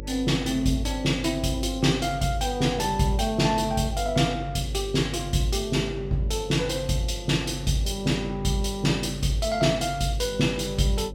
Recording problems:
mains hum; 50 Hz, harmonics up to 550 Hz, SNR 12 dB

